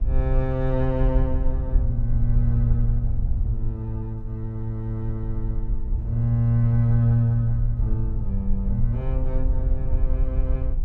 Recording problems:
wind on the microphone; below 60 Hz, SNR 2 dB

